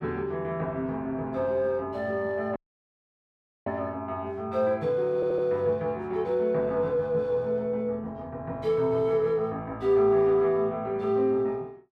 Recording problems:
dropout; at 2.5 s for 1 s
stutter; at 5 s

